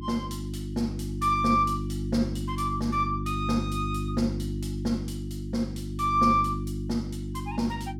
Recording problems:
hum; 50 Hz, harmonics up to 350 Hz, SNR 5 dB

